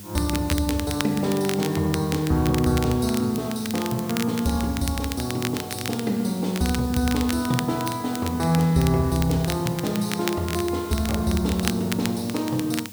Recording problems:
hum; 50 Hz, harmonics up to 700 Hz, SNR 19 dB
background hiss; slope +3 dB per octave, SNR 17 dB
crackling; vinyl, SNR 10 dB

